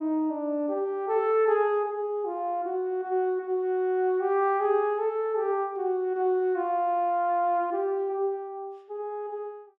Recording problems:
none

